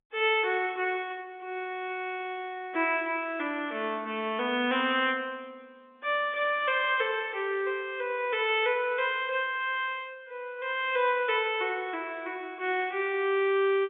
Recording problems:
phone line; 280 Hz to 3.6 kHz, G.711

